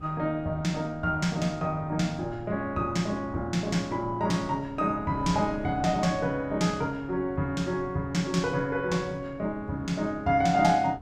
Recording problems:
wind on the microphone; below 290 Hz, SNR 18 dB

